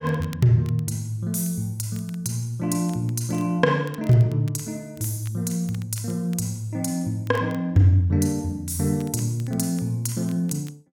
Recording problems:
crackling; vinyl, SNR 26 dB

